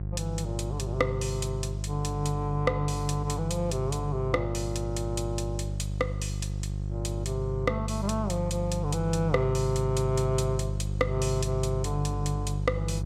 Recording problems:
electrical hum; 50 Hz, harmonics up to 500 Hz, SNR 2 dB

